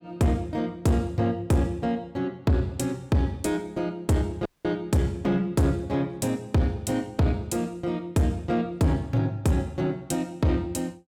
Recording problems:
distortion; soft clipping, signal-to-distortion ratio 11 dB
dropout; at 4.5 s

